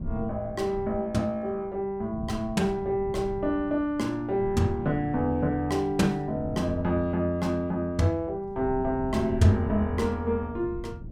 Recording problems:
wind noise; below 160 Hz, SNR 13 dB

